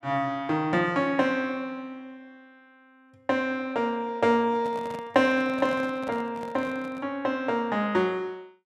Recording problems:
handling noise; from 4.5 to 7 s; peak -9 dB vs average level

